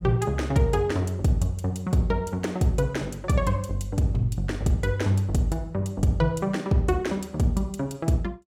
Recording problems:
none

